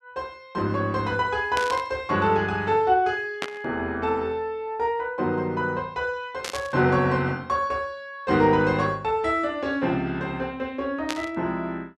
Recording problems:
burst of static; 4 times, first at 1.5 s; peak 0 dB vs average level

